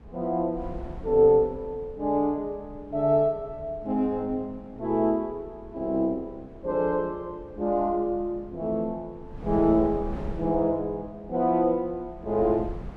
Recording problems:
wind on the microphone; below 200 Hz, SNR 17 dB

